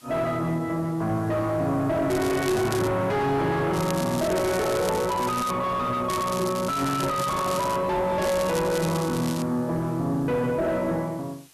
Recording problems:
distorted audio; soft clipping, signal-to-distortion ratio 6 dB
hiss; slope +1 dB per octave, SNR 26 dB
crackle; 4 times, first at 2 s; loose cable, SNR 12 dB

